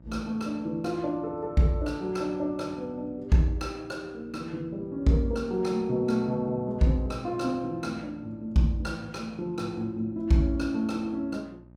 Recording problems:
hum; 60 Hz, harmonics up to 900 Hz, SNR 25 dB

